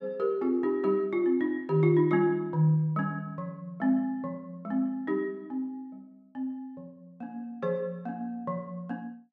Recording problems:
none

